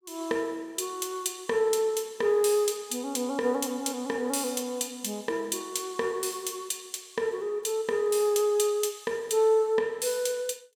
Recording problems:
none

